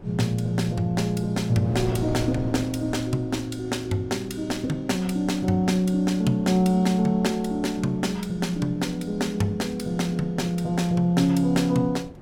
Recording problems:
wind noise; below 390 Hz, SNR 17 dB

